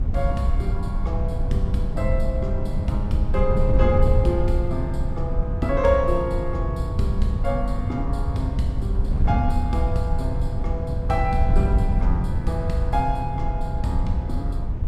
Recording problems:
rumble; below 88 Hz, SNR 7 dB
wind on the microphone; below 92 Hz, SNR -1 dB

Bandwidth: 14.5 kHz